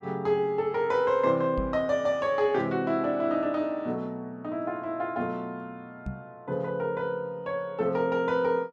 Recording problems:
microphone thump; at 1.5 s and at 6 s; peak -3 dB vs average level

